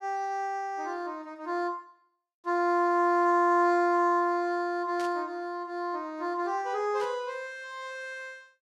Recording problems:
static burst; at 5 s and at 7 s; peak -11 dB vs average level

